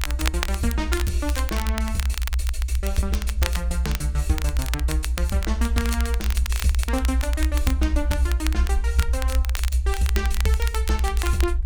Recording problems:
rumble; below 66 Hz, strongest tone 64 Hz, SNR -4 dB
crackle; vinyl, SNR 5 dB

